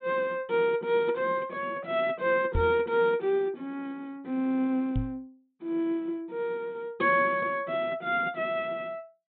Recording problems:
low-pass filter; nothing above 4 kHz
knock on the microphone; at 2.5 s and at 5 s; peak +2 dB vs average level

